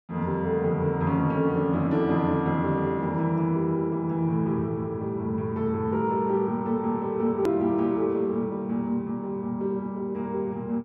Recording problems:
hard cut with a click; at 7.5 s

